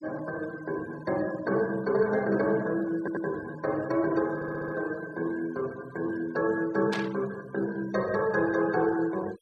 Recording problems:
denoising artefacts; signal-to-artefact ratio 20 dB
audio stuttering; at 3 s and at 4.5 s
static burst; at 7 s; peak -2 dB vs average level

